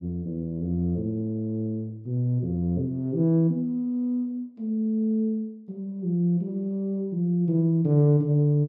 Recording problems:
none

